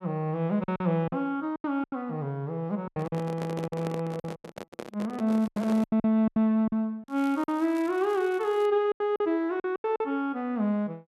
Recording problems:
lost packets; 12% of the sound replaced, filled with silence
handling noise; from 3 to 6 s; peak -4 dB vs average level
crackling; at 5.5 s and from 7 to 8.5 s; loose cable, SNR 25 dB

